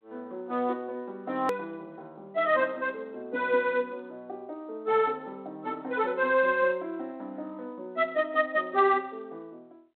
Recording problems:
phone line; 280 Hz to 3.7 kHz, G.726
hard cut with a click; at 1.5 s

